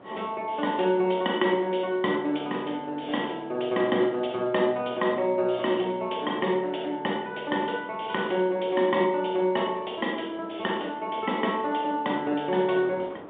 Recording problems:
phone line; 150 Hz to 3.7 kHz, G.711
wind on the microphone; below 830 Hz, SNR 21 dB

